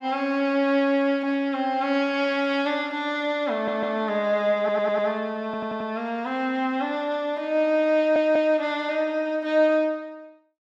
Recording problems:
audio stuttering; 4 times, first at 3.5 s

